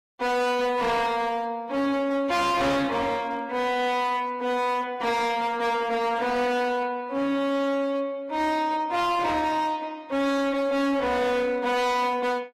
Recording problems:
codec artefacts; AAC, log-spectral distance 2 dB, nothing above 14.3 kHz
distorted audio; hard clipping, signal-to-distortion ratio 7 dB

